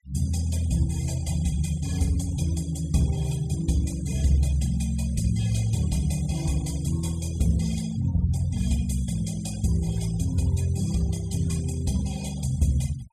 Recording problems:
denoising artefacts; signal-to-artefact ratio 18 dB

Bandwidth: 14 kHz